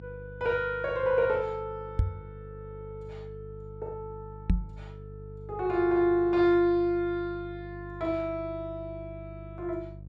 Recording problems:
electrical hum; 50 Hz, harmonics up to 500 Hz, SNR 17 dB
knock on the microphone; at 2 s and at 4.5 s; peak +6 dB vs average level

